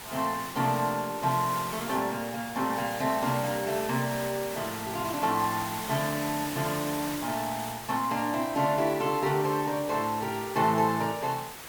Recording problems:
background hiss; SNR 9 dB

